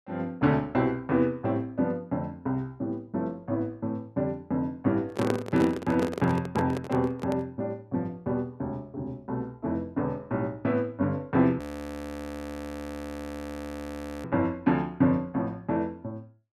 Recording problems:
microphone handling noise; from 5 to 7.5 s; peak +4 dB vs average level
frozen audio; at 12 s for 2.5 s

